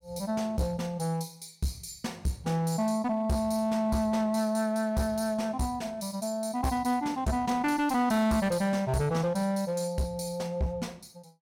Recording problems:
distorted audio; hard clipping, uneven, signal-to-distortion ratio 11 dB

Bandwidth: 16.5 kHz